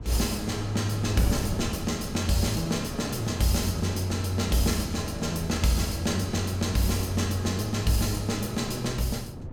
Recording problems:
wind noise; below 250 Hz, SNR 11 dB

